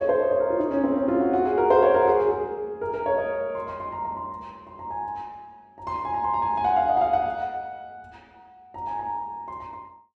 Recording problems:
none

